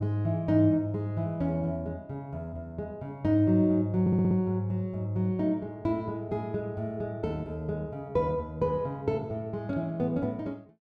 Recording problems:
audio stuttering; at 4 s

